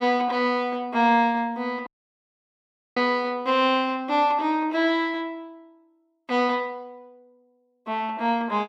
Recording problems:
dropout; at 2 s for 1 s

